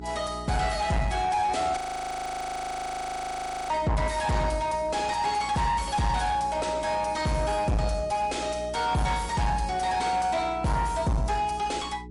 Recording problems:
lossy codec; MP3, log-spectral distance 3 dB
distorted audio; soft clipping, signal-to-distortion ratio 7 dB
hum; 60 Hz, harmonics up to 420 Hz, SNR 16 dB
audio freezing; at 2 s for 2 s

